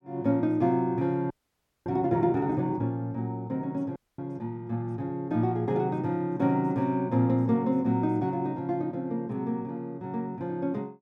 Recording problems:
audio freezing; at 1.5 s for 0.5 s and at 4 s

